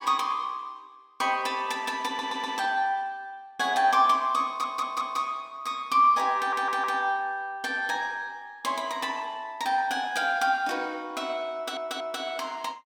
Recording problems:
stutter; 4 times, first at 2 s

